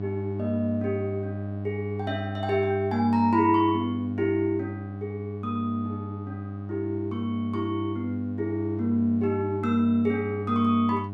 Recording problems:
hum; 50 Hz, harmonics up to 800 Hz, SNR 7 dB

